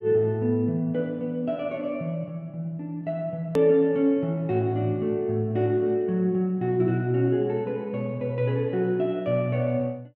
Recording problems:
click at an edit; at 3.5 s

